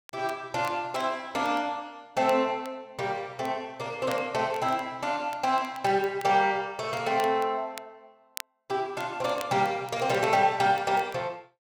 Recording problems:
crackling; vinyl, SNR 20 dB

